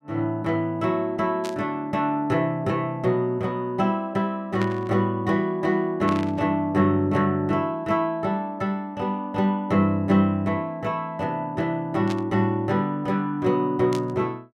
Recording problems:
burst of static; 5 times, first at 1.5 s; peak -6 dB vs average level

